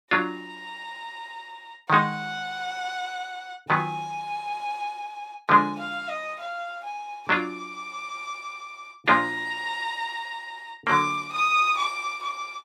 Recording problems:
none

